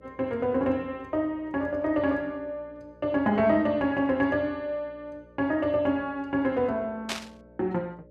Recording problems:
electrical hum; 60 Hz, harmonics up to 600 Hz, SNR 26 dB
burst of static; at 7 s; peak +1 dB vs average level

